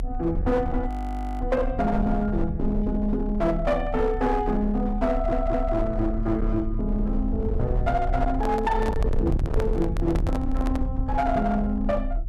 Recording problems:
distorted audio; hard clipping, uneven, signal-to-distortion ratio 10 dB
low-frequency rumble; below 66 Hz, strongest tone 34 Hz, SNR 4 dB
audio freezing; at 1 s for 0.5 s
stutter; at 5 s
handling noise; from 8.5 to 11 s; peak -1 dB vs average level

